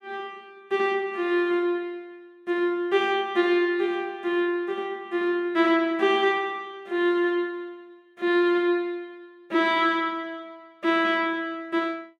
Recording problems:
none

